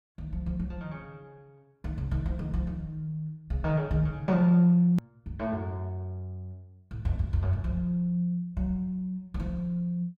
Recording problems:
hard cut with a click; at 5 s

